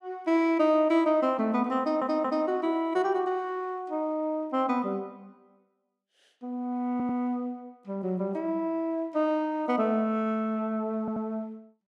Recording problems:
audio stuttering; at 2 s, at 7 s and at 11 s

